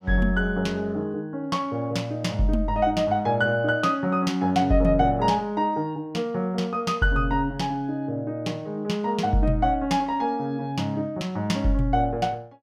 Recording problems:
none

